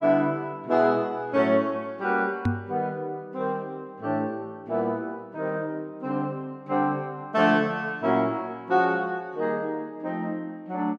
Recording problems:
knock on the microphone; at 2.5 s; peak +5 dB vs average level

